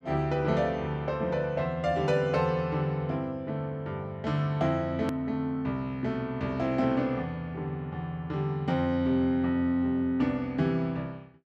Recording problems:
hard cut with a click; at 5 s

